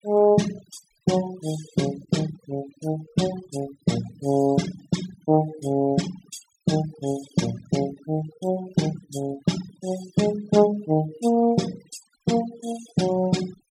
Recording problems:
noise reduction artefacts; signal-to-artefact ratio 15 dB

